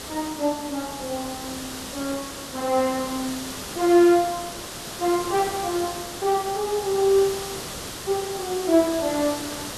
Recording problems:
hiss; SNR 9 dB

